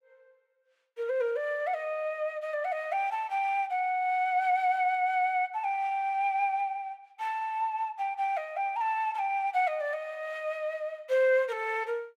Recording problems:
none

